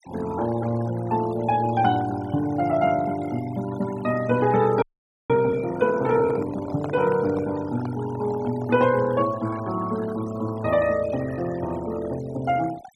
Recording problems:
noise reduction artefacts; signal-to-artefact ratio 18 dB
audio freezing; at 5 s
microphone handling noise; from 6 to 9 s; peak -5 dB vs average level

